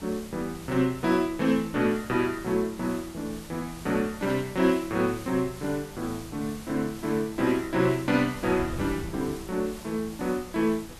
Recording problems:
hiss; slope -1 dB per octave, SNR 18 dB
wind noise; below 210 Hz, SNR 18 dB

